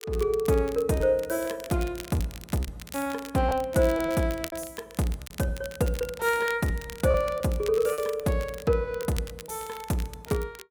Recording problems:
crackle; vinyl, SNR 16 dB
lost packets; 6% of the sound replaced, filled with repeated pitch periods

